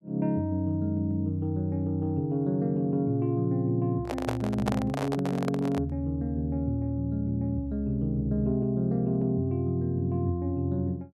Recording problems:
microphone handling noise; from 4 to 6 s; peak +2 dB vs average level

